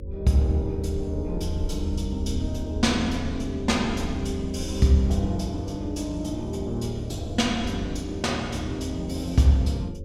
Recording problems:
hum; 50 Hz, harmonics up to 550 Hz, SNR 15 dB
rumble; below 82 Hz, strongest tone 80 Hz, SNR 9 dB

